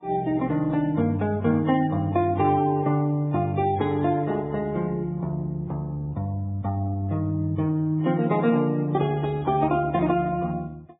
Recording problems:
lossy compression; AAC, then Vorbis, log-spectral distance 2 dB, nothing above 3.6 kHz

